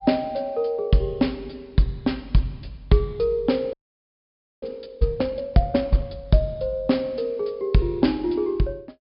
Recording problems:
low-pass filter; nothing above 5.5 kHz
frozen audio; at 3.5 s for 1 s

